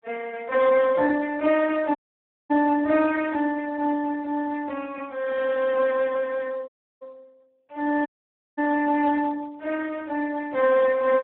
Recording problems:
telephone audio; 320 Hz to 2.1 kHz, Speex
audio cutting out; at 2 s for 0.5 s, at 6.5 s and at 8 s for 0.5 s

